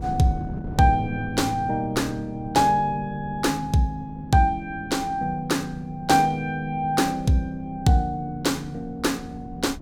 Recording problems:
wind on the microphone; below 230 Hz, SNR 16 dB

